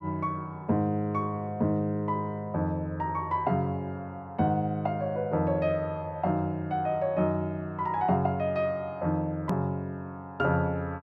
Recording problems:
click at an edit; at 9.5 s

